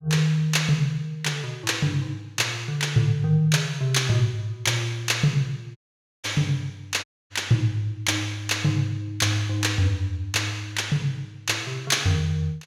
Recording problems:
dropout; at 6 s and at 7 s

